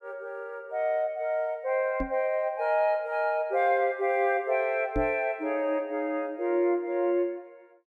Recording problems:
knock on the microphone; at 2 s and at 5 s; peak 0 dB vs average level

